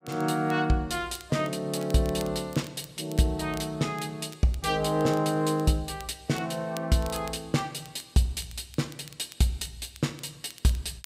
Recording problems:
crackle; vinyl, SNR 20 dB

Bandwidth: 15.5 kHz